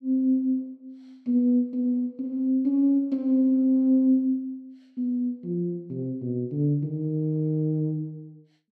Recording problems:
none

